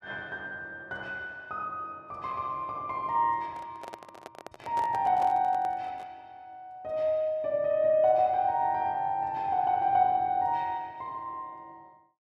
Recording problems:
microphone handling noise; from 3.5 to 6 s; peak -7 dB vs average level

